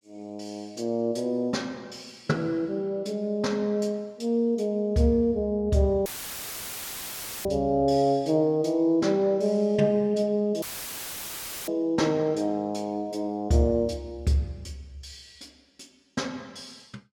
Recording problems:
audio cutting out; at 6 s for 1.5 s and at 11 s for 1 s; filled with static

